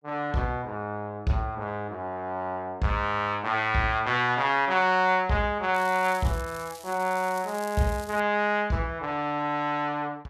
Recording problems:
crackle; from 6 to 8 s; loose cable, SNR 18 dB

